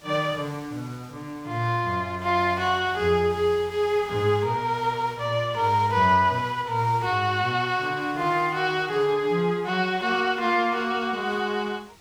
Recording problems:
hiss; slope -2 dB per octave, SNR 25 dB

